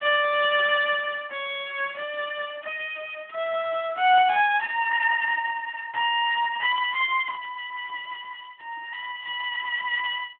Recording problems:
telephone audio; 300 Hz to 3.5 kHz, Speex

